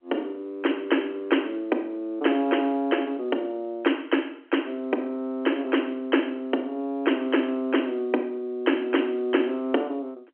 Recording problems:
telephone audio; 220 Hz to 3.2 kHz, G.711

